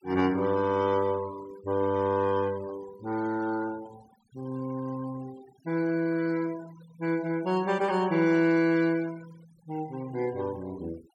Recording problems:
denoising artefacts; signal-to-artefact ratio 20 dB

